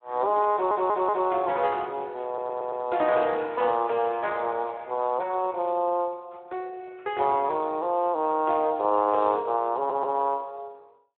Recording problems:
phone line; 320 Hz to 3.7 kHz, Speex
audio stuttering; at 0.5 s, at 2.5 s and at 10 s

